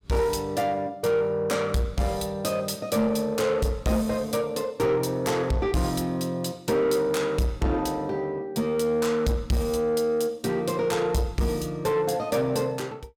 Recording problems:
distortion; soft clipping, signal-to-distortion ratio 11 dB

